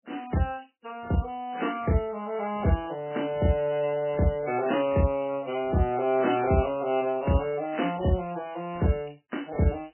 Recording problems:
codec artefacts; MP3, log-spectral distance 5 dB, nothing above 3 kHz

